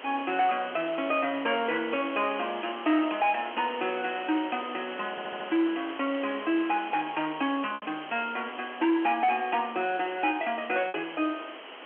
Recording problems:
phone line; 240 Hz to 3.3 kHz, G.711
distortion; hard clipping, signal-to-distortion ratio 12 dB
hiss; SNR 12 dB
lost packets; 1.2% of the sound replaced, filled with repeated pitch periods
stutter; at 5 s

